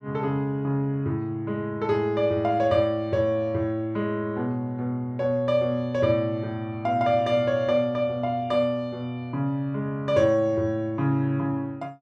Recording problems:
none

